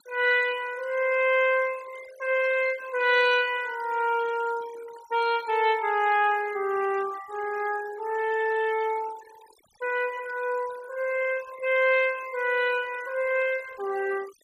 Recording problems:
noise reduction artefacts; signal-to-artefact ratio 19 dB

